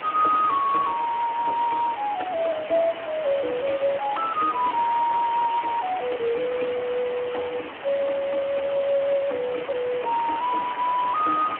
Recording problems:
phone line; 260 Hz to 2.3 kHz, Speex
hiss; SNR 11 dB

